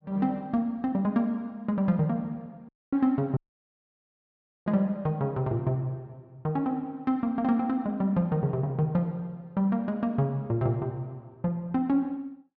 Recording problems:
audio cutting out; at 2.5 s and at 3.5 s for 1.5 s

